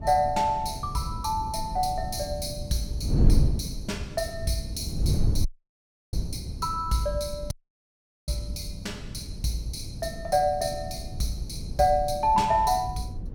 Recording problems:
wind noise; below 120 Hz, SNR 5 dB
dropout; at 5.5 s for 0.5 s and at 7.5 s for 1 s

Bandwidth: 17.5 kHz